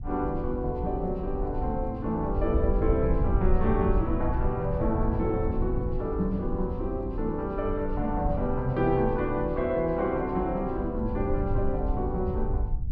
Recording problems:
low-frequency rumble; below 80 Hz, SNR 4 dB

